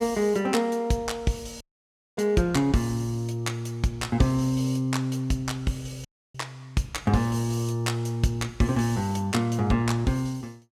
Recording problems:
audio cutting out; at 1.5 s for 0.5 s and at 6 s

